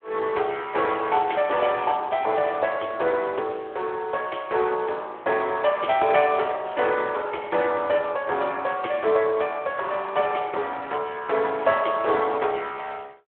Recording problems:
telephone audio; 340 Hz to 3.4 kHz, Speex

